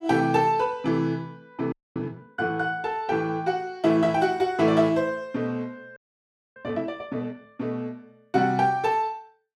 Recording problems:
frozen audio; at 1.5 s and at 6 s for 0.5 s

